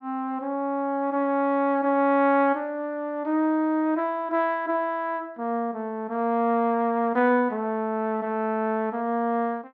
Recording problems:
none

